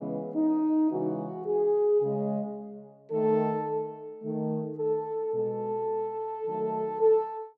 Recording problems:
none

